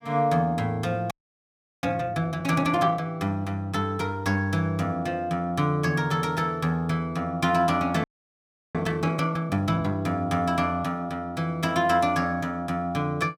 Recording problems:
frozen audio; at 1 s for 0.5 s and at 8 s for 0.5 s

